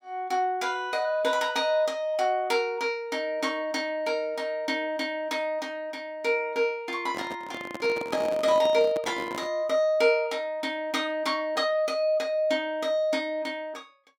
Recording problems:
microphone handling noise; from 7 to 9.5 s; peak -2 dB vs average level

